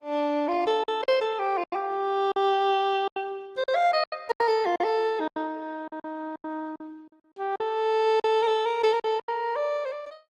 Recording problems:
lossy compression; Opus, log-spectral distance 2 dB
packet loss; 10% of the sound replaced, filled with silence

